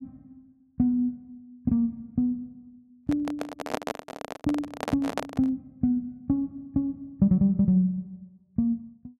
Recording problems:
handling noise; from 3 to 5.5 s; peak +2 dB vs average level

